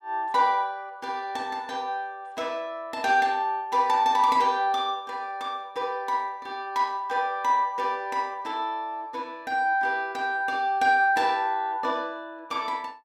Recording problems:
none

